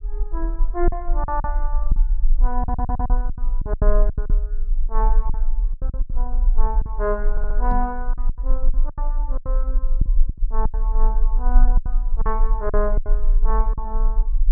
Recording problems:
low-frequency rumble; below 36 Hz, strongest tone 22 Hz, SNR -6 dB
lost packets; 12% of the sound replaced, filled with silence
audio stuttering; at 2.5 s and at 7.5 s
microphone bump; at 7.5 s; peak +3 dB vs average level

